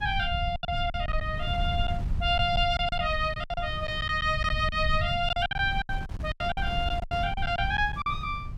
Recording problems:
rumble; below 100 Hz, SNR 6 dB
wind on the microphone; below 420 Hz, SNR 18 dB
lost packets; 12% of the sound replaced, filled with silence

